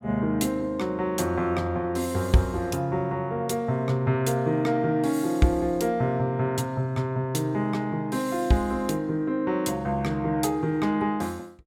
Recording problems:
none

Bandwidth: 16 kHz